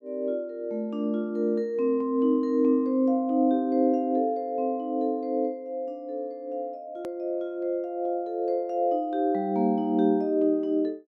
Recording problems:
edit click; at 7 s

